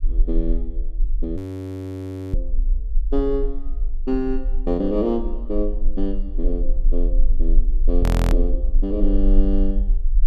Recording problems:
rumble; below 40 Hz, strongest tone 24 Hz, SNR -1 dB
frozen audio; at 1.5 s for 1 s and at 8 s

